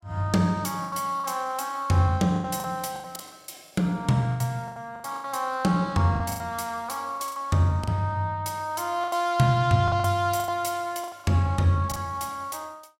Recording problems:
lost packets; 11% of the sound replaced, filled with the last packet

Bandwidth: 16 kHz